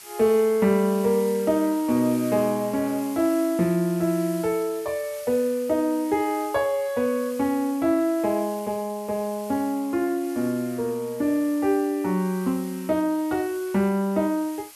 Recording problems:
hiss; slope +1 dB per octave, SNR 18 dB

